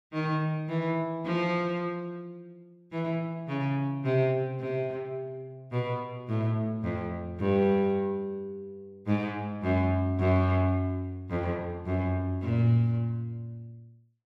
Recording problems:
none

